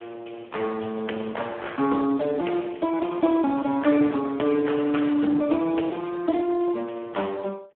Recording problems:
phone line; 240 Hz to 3.3 kHz, Speex

